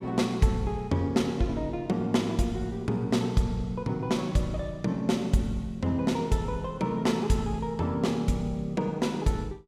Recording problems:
none

